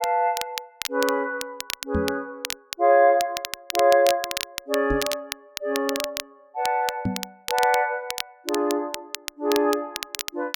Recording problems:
crackle; vinyl, SNR 9 dB
microphone bump; at 2 s, at 5 s and at 7 s; peak +1 dB vs average level

